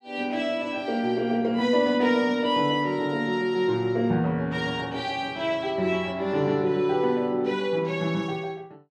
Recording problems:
none

